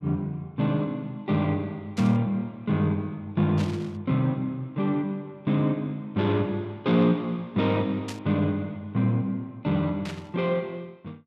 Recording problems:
static burst; 4 times, first at 2 s; peak -7 dB vs average level

